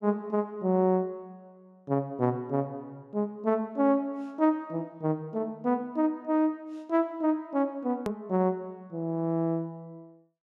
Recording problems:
click at an edit; at 8 s

